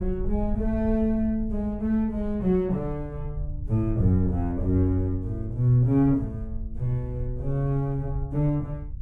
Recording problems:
rumble; below 72 Hz, SNR 10 dB

